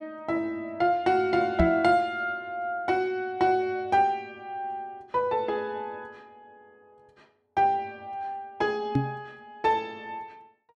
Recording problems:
microphone thump; at 1.5 s and at 9 s; peak +6 dB vs average level

